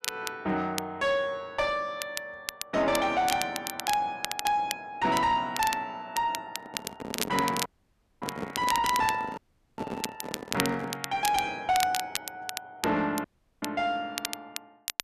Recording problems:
distorted audio; soft clipping, signal-to-distortion ratio 11 dB
crackle; vinyl, SNR 7 dB
handling noise; from 6.5 to 11 s; peak -1 dB vs average level
dropout; at 7.5 s for 0.5 s, at 9.5 s and at 13 s

